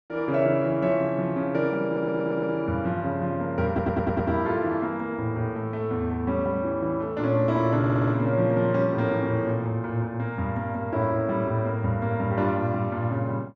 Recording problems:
audio stuttering; at 2 s, at 3.5 s and at 8 s

